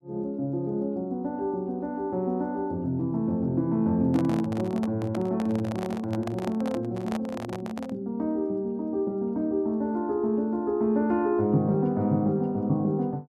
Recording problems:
handling noise; from 4 to 8 s; peak -4 dB vs average level

